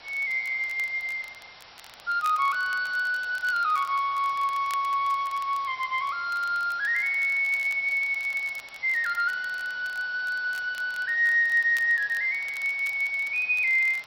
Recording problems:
codec artefacts; MP3, log-spectral distance 4 dB
hiss; SNR 22 dB
crackling; vinyl, SNR 24 dB

